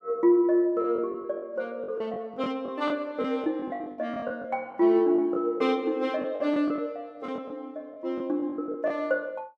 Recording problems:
packet loss; 10% of the sound replaced, filled with the last packet

